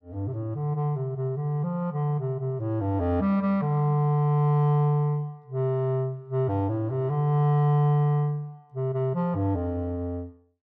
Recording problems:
none

